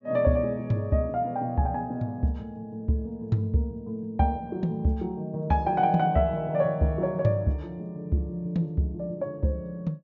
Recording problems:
treble missing; nothing above 7.2 kHz

